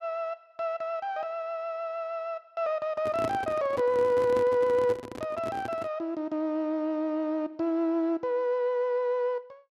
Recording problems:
handling noise; from 3 to 6 s; peak -1 dB vs average level

